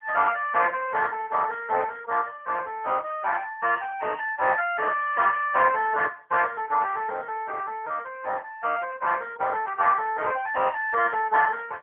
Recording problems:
phone line; 390 Hz to 2.8 kHz, AMR-NB

